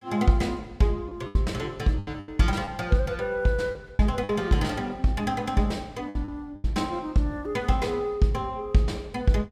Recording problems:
packet loss; 6% of the sound replaced, filled with the last packet

